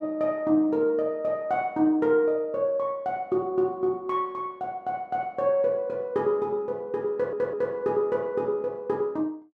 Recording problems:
audio stuttering; at 7 s

